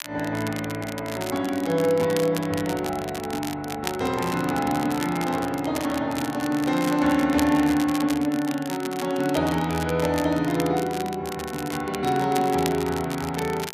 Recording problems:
crackling; vinyl, SNR 12 dB

